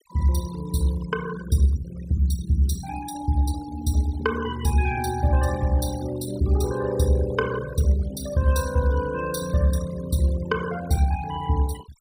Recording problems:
denoising artefacts; signal-to-artefact ratio 16 dB

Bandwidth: 15.5 kHz